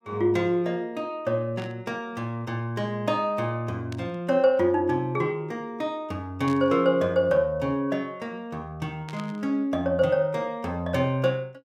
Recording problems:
burst of static; 4 times, first at 1.5 s; peak -12 dB vs average level

